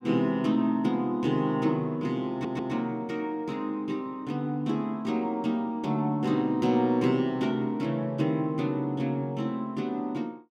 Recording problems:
stutter; at 2.5 s

